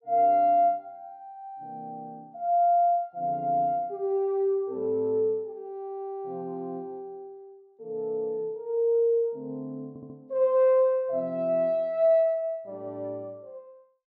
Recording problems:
audio stuttering; at 10 s

